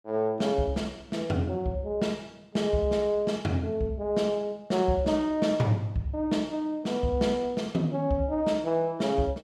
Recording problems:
none

